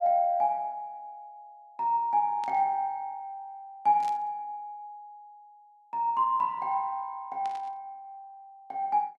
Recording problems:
burst of static; at 2.5 s, at 4 s and at 7.5 s; peak -13 dB vs average level

